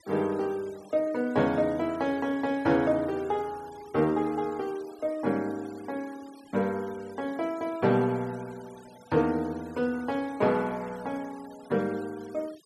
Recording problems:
noise reduction artefacts; signal-to-artefact ratio 23 dB

